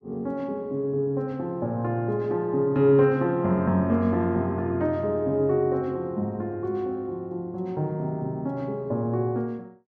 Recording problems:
none

